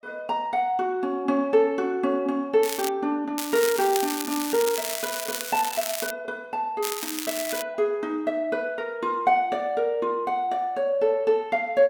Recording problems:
crackle; at 2.5 s, from 3.5 to 6 s and at 7 s; loose cable, SNR 6 dB

